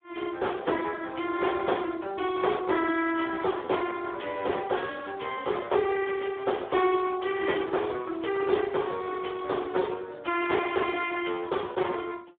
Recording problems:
telephone audio; 280 Hz to 3.4 kHz, Speex

